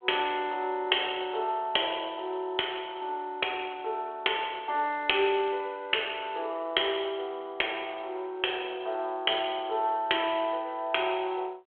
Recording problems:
telephone audio; 320 Hz to 3.4 kHz, G.726

